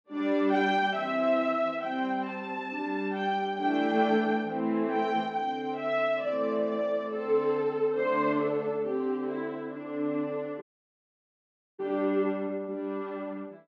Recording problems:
audio cutting out; at 11 s for 1 s

